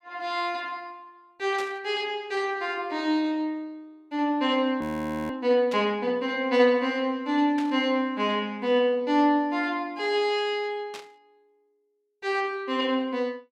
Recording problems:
static burst; 4 times, first at 1.5 s; peak -8 dB vs average level
frozen audio; at 5 s

